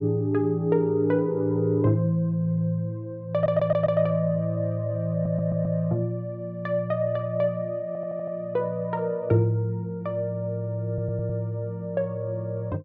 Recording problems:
stutter; 4 times, first at 3.5 s

